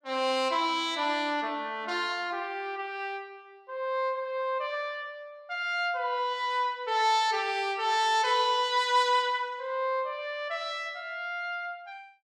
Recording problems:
none

